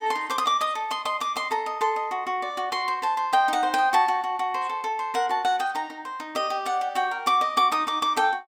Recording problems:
none

